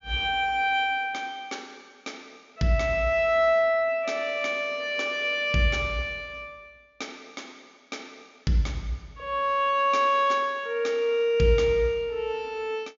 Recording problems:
treble missing; nothing above 7.3 kHz

